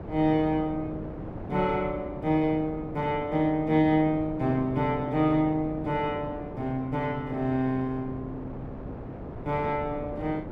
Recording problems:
wind on the microphone; below 500 Hz, SNR 12 dB

